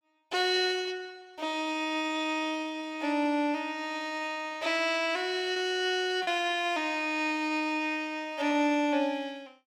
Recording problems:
lost packets; 3% of the sound replaced, filled with repeated pitch periods

